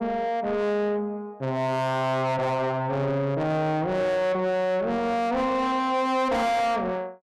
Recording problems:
distortion; soft clipping, signal-to-distortion ratio 7 dB

